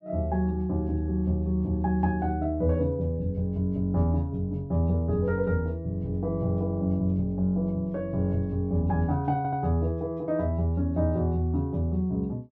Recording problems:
audio stuttering; at 9.5 s

